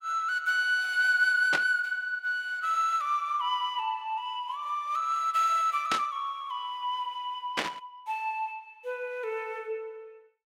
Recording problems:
burst of static; at 1.5 s, at 6 s and at 7.5 s; peak +4 dB vs average level

